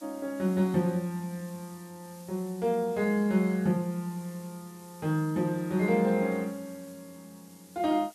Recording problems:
hiss; slope +1 dB per octave, SNR 23 dB

